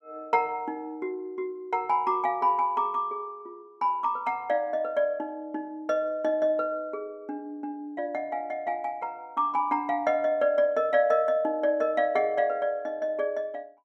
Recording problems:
none

